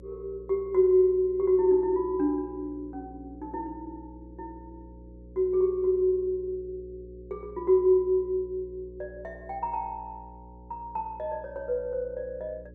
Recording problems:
mains hum; 60 Hz, harmonics up to 540 Hz, SNR 21 dB

